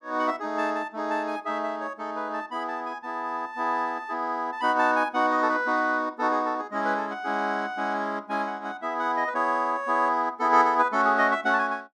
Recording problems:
none

